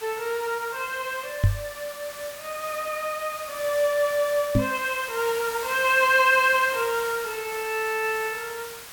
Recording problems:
background hiss; slope 0 dB per octave, SNR 12 dB
microphone bump; at 1.5 s and at 4.5 s; peak +7 dB vs average level

